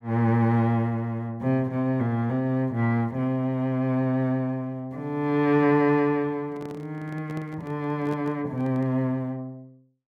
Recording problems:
handling noise; from 6.5 to 9 s; peak -11 dB vs average level

